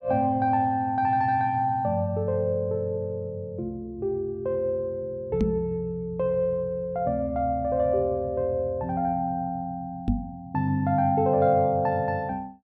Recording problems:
microphone bump; at 5.5 s and at 10 s; peak +5 dB vs average level

